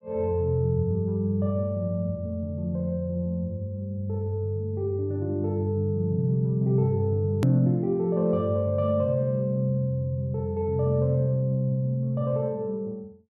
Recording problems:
click at an edit; at 7.5 s

